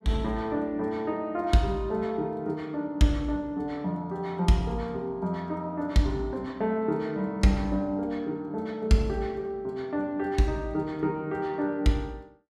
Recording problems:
none

